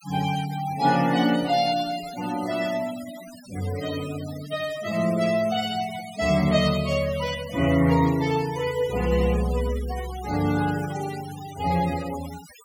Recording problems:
noise reduction artefacts; signal-to-artefact ratio 15 dB

